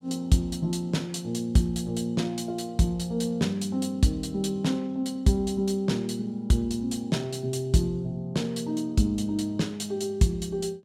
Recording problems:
none

